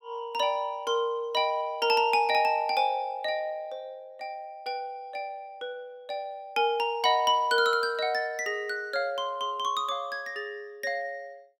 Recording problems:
none

